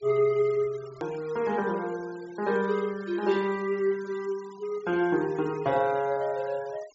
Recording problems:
low-pass filter; nothing above 8 kHz
denoising artefacts; signal-to-artefact ratio 21 dB
click at an edit; at 1 s

